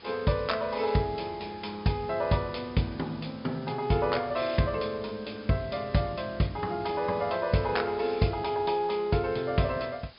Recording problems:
treble cut off; nothing above 5.2 kHz
background hiss; slope -1 dB per octave, SNR 22 dB

